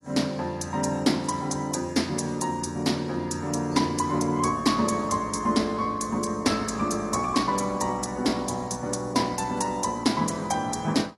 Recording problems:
lossy compression; AAC, log-spectral distance 4 dB, nothing above 11 kHz

